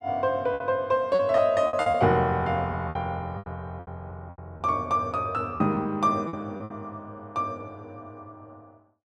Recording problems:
packet loss; 9% of the sound replaced, filled with repeated pitch periods

